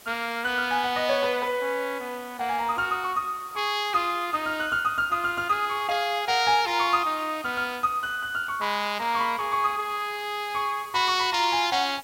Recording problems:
background hiss; slope -2 dB per octave, SNR 21 dB

